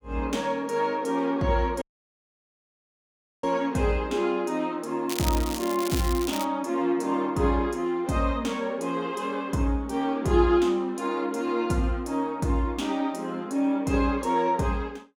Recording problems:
audio cutting out; at 2 s for 1.5 s
crackling; from 5 to 6.5 s; loose cable, SNR 8 dB

